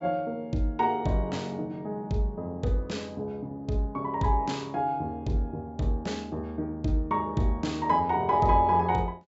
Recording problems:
low-pass filter; nothing above 8 kHz

